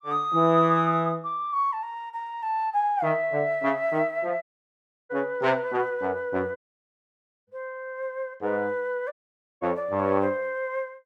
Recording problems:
dropout; at 4.5 s for 0.5 s, at 6.5 s for 1 s and at 9 s

